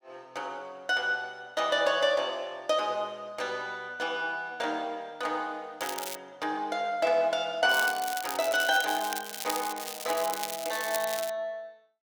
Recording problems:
crackling; at 6 s and from 7.5 to 11 s; loose cable, SNR 7 dB

